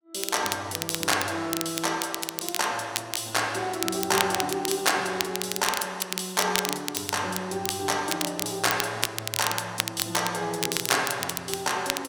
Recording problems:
crackling; vinyl, SNR 3 dB

